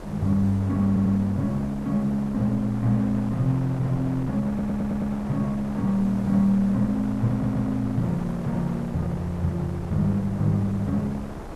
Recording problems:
background hiss; SNR 29 dB
wind noise; below 730 Hz, SNR 13 dB
stutter; at 1 s, at 4.5 s and at 7.5 s

